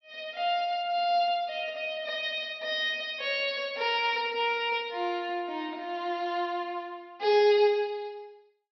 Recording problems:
low-pass filter; nothing above 5.9 kHz

